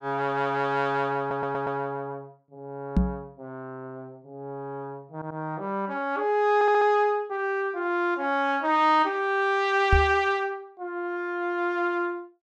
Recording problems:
stutter; at 1 s, at 5 s and at 6.5 s
microphone bump; at 3 s and at 10 s; peak +6 dB vs average level

